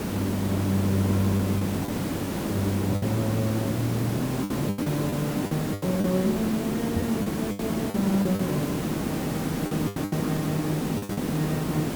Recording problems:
background hiss; SNR 0 dB
lost packets; 8% of the sound replaced, filled with the last packet
microphone bump; at 7 s; peak +2 dB vs average level

